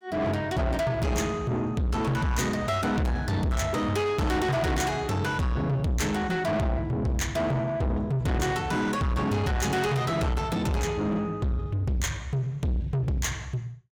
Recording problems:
distortion; soft clipping, signal-to-distortion ratio 7 dB

